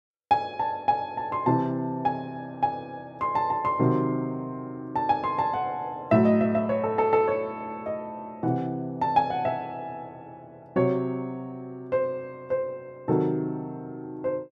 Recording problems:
none

